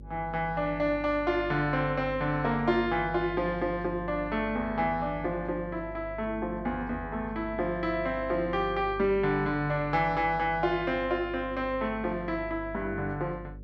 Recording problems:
hum; 50 Hz, harmonics up to 550 Hz, SNR 15 dB

